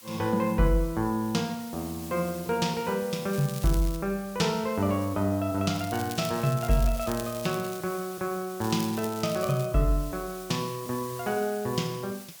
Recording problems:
background hiss; slope +1 dB per octave, SNR 16 dB
crackle; at 3.5 s, from 5.5 to 8 s and from 8.5 to 9.5 s; loose cable, SNR 14 dB

